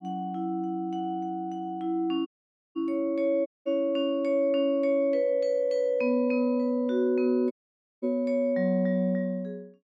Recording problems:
audio cutting out; at 2.5 s, at 3.5 s and at 7.5 s for 0.5 s

